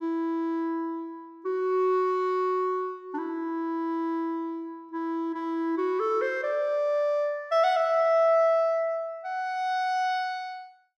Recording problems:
none

